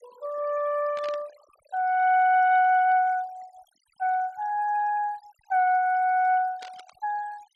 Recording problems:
denoising artefacts; signal-to-artefact ratio 25 dB
burst of static; at 1 s and at 6.5 s; peak -15 dB vs average level

